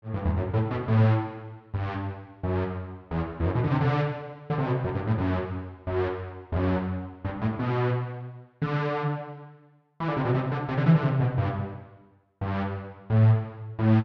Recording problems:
none

